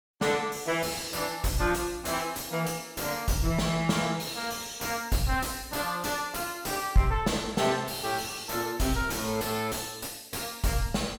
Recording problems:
distortion; soft clipping, signal-to-distortion ratio 6 dB

